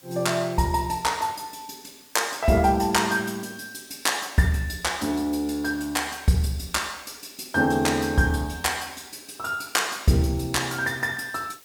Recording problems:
hiss; slope 0 dB per octave, SNR 25 dB

